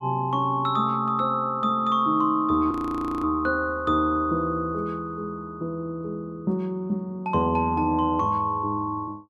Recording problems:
frozen audio; at 2.5 s for 0.5 s

